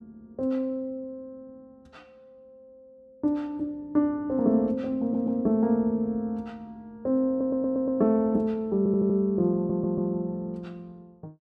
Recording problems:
audio stuttering; 4 times, first at 5 s

